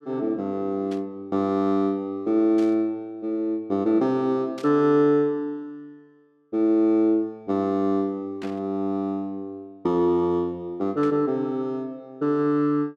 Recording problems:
burst of static; 5 times, first at 1 s; peak -14 dB vs average level

